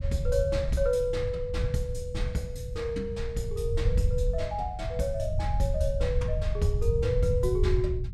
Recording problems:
rumble; below 96 Hz, SNR 0 dB

